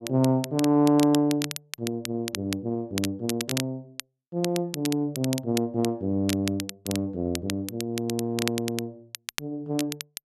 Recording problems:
crackling; vinyl, SNR 9 dB

